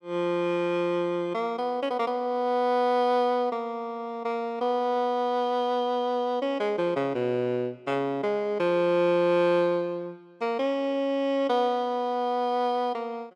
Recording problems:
none

